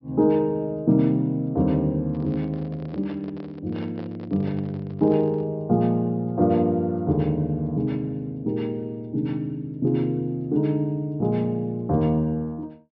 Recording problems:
low-pass filter; nothing above 5.5 kHz
handling noise; from 2 to 5.5 s; peak -10 dB vs average level

